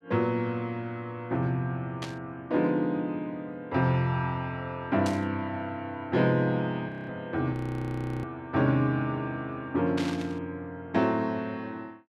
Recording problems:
static burst; at 2 s, at 5 s and at 10 s; peak -4 dB vs average level
frozen audio; at 7 s and at 7.5 s for 0.5 s

